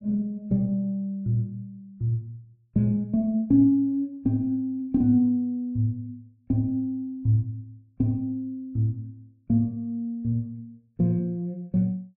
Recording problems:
none

